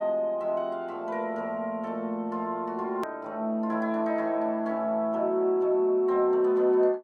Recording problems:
hard cut with a click; at 3 s

